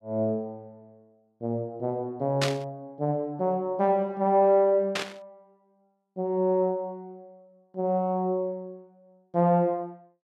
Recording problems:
static burst; at 2.5 s and at 5 s; peak +3 dB vs average level

